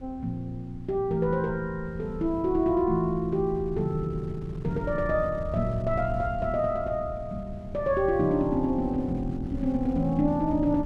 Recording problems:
wind noise; below 120 Hz, SNR 12 dB

